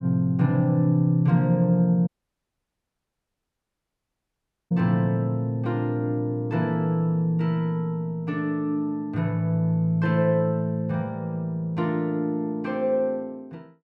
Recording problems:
audio cutting out; at 2 s for 2.5 s

